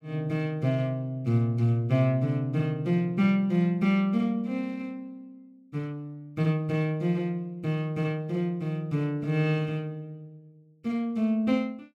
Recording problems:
none

